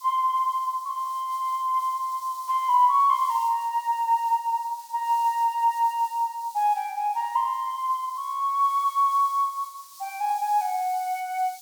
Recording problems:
background hiss; SNR 22 dB

